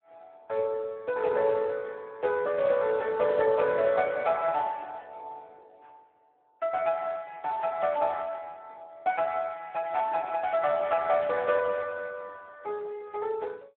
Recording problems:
phone line; 320 Hz to 3 kHz, Speex

